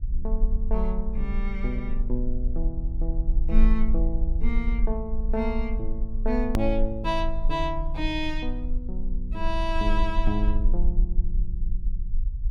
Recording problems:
low-frequency rumble; below 42 Hz, strongest tone 18 Hz, SNR -1 dB
hard cut with a click; at 6.5 s

